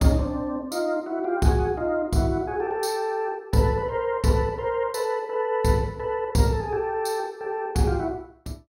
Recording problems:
none

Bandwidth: 16.5 kHz